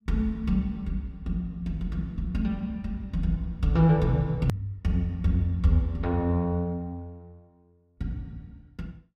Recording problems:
hard cut with a click; at 4.5 s

